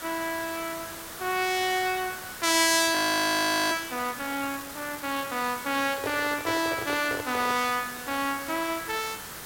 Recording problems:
hiss; SNR 11 dB
audio freezing; at 3 s for 1 s
microphone handling noise; from 6 to 7.5 s; peak -3 dB vs average level

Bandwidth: 16.5 kHz